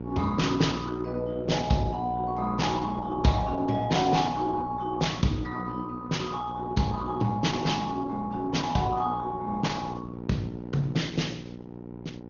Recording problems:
treble missing; nothing above 6.7 kHz
lossy codec; Opus, log-spectral distance 3 dB
electrical hum; 60 Hz, harmonics up to 1 kHz, SNR 10 dB

